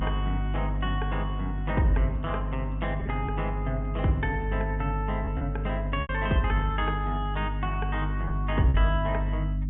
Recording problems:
low-pass filter; nothing above 3.4 kHz
electrical hum; 50 Hz, harmonics up to 300 Hz, SNR 1 dB
lost packets; 2% of the sound replaced, filled with repeated pitch periods

